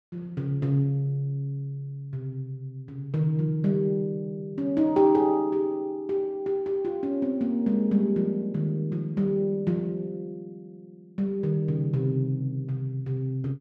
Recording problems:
none

